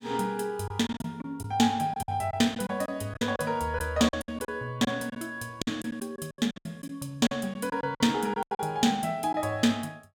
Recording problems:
packet loss; 12% of the sound replaced, filled with silence

